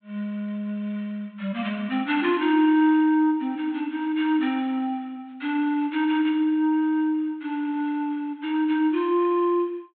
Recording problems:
treble missing; nothing above 4 kHz

